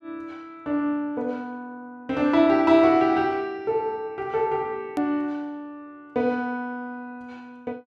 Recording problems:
hard cut with a click; at 5 s

